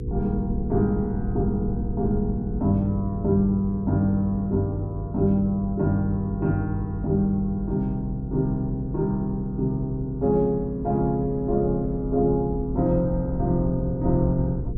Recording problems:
electrical hum; 60 Hz, harmonics up to 480 Hz, SNR 12 dB
rumble; below 80 Hz, SNR 11 dB

